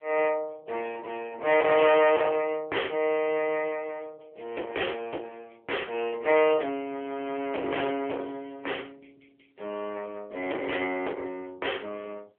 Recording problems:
phone line; 300 Hz to 3.3 kHz, AMR-NB
distortion; soft clipping, signal-to-distortion ratio 9 dB

